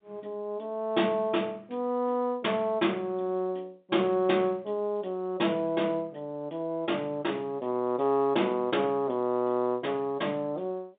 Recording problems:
telephone audio; 150 Hz to 3.7 kHz, G.711

